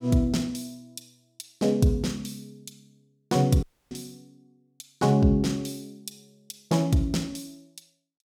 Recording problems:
dropout; at 3.5 s

